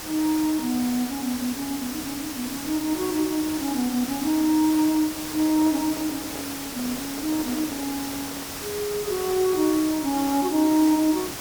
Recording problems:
hiss; slope -2 dB per octave, SNR 8 dB
microphone handling noise; from 5 to 8.5 s; peak -10 dB vs average level

